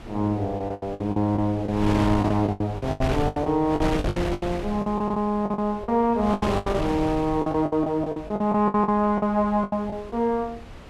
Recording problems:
wind on the microphone; below 700 Hz, SNR 10 dB
lost packets; 17% of the sound replaced, filled with the last packet

